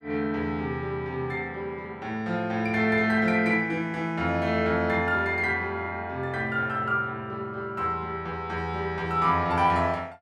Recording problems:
none

